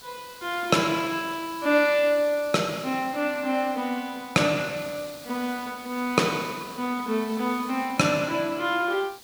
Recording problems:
hiss; SNR 18 dB

